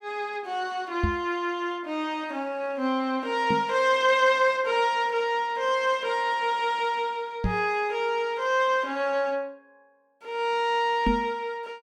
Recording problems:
microphone thump; 4 times, first at 1 s; peak +3 dB vs average level

